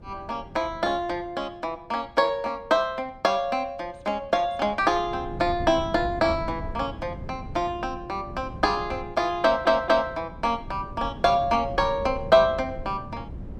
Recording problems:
wind on the microphone; below 210 Hz, SNR 14 dB
stutter; at 9.5 s

